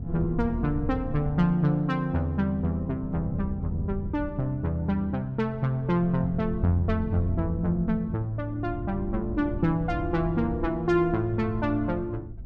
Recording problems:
wind noise; below 140 Hz, SNR 9 dB

